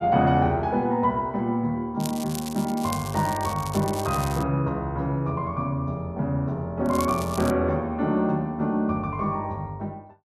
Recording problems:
crackling; from 2 to 4.5 s and at 7 s; loose cable, SNR 13 dB

